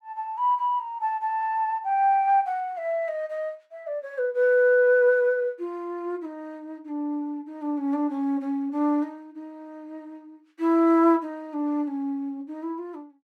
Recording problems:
none

